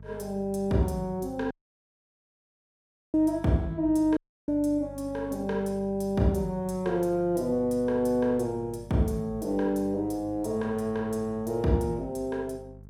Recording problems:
hum; 50 Hz, harmonics up to 450 Hz, SNR 19 dB
dropout; at 1.5 s for 1.5 s and at 4 s

